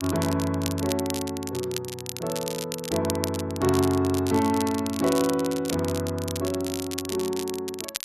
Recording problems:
crackling; vinyl, SNR 9 dB

